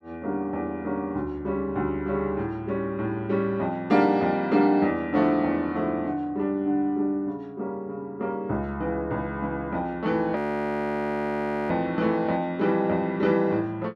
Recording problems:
audio freezing; at 10 s for 1.5 s

